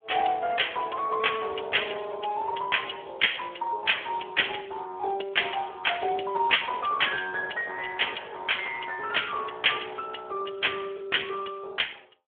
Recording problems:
telephone audio; 320 Hz to 3.4 kHz, Speex

